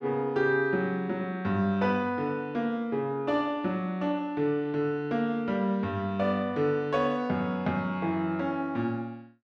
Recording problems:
none

